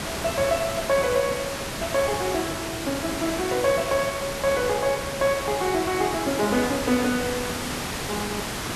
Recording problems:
background hiss; slope -3 dB per octave, SNR 4 dB

